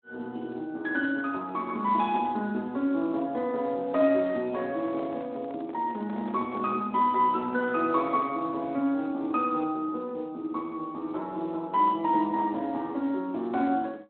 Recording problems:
telephone audio; 190 Hz to 3.8 kHz, Speex
microphone handling noise; from 4.5 to 8.5 s; peak -11 dB vs average level

